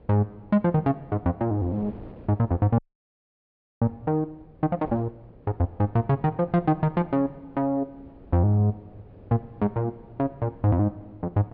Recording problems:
treble missing; nothing above 5.5 kHz
wind noise; below 440 Hz, SNR 23 dB
frozen audio; at 3 s for 1 s

